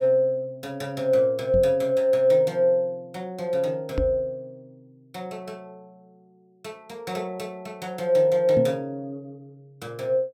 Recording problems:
microphone bump; at 1.5 s, at 4 s and at 8.5 s; peak 0 dB vs average level

